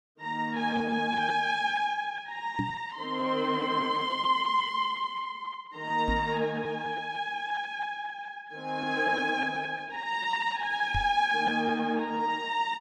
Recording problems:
packet loss; 7% of the sound replaced, filled with repeated pitch periods
microphone thump; at 2.5 s, at 6 s and at 11 s; peak +1 dB vs average level

